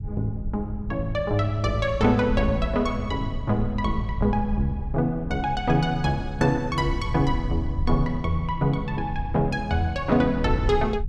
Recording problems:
low-frequency rumble; below 86 Hz, SNR 8 dB

